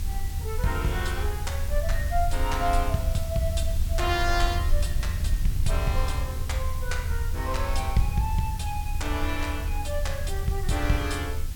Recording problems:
hum; 60 Hz, harmonics up to 1.3 kHz, SNR 20 dB
background hiss; slope +1 dB per octave, SNR 12 dB
low-frequency rumble; below 78 Hz, SNR 0 dB

